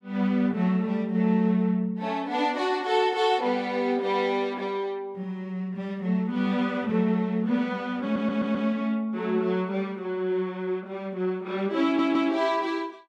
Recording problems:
stutter; at 8 s and at 12 s

